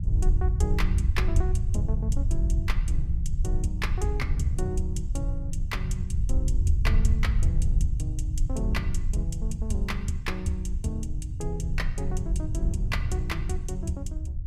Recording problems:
low-frequency rumble; below 76 Hz, SNR -4 dB
wind on the microphone; below 130 Hz, SNR 7 dB

